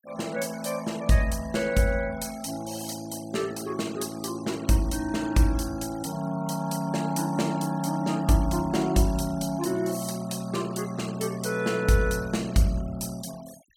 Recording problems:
noise reduction artefacts; signal-to-artefact ratio 20 dB

